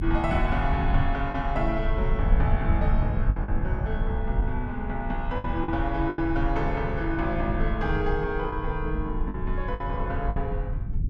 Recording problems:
rumble; below 84 Hz, strongest tone 28 Hz, SNR 0 dB
packet loss; 5% of the sound replaced, filled with the last packet

